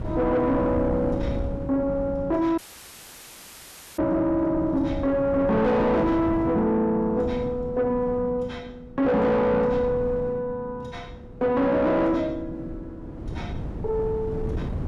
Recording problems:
distorted audio; soft clipping, signal-to-distortion ratio 7 dB
wind on the microphone; below 270 Hz, SNR 10 dB
audio cutting out; at 2.5 s for 1.5 s

